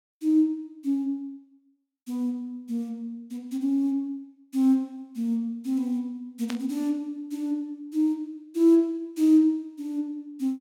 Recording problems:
burst of static; at 6.5 s; peak -6 dB vs average level

